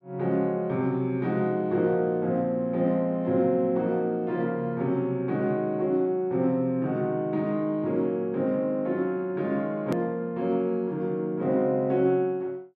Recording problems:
edit click; at 10 s

